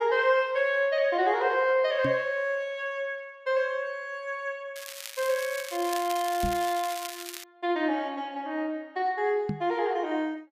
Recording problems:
knock on the microphone; at 2 s, at 6.5 s and at 9.5 s; peak +1 dB vs average level
crackling; from 5 to 7.5 s; loose cable, SNR 11 dB

